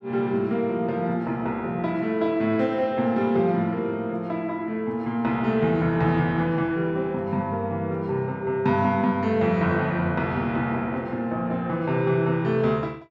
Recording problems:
none

